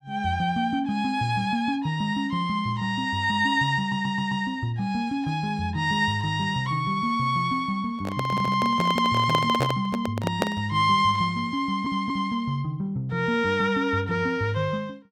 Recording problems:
stutter; at 4 s, at 8.5 s and at 12 s
handling noise; from 8 to 11 s; peak +4 dB vs average level

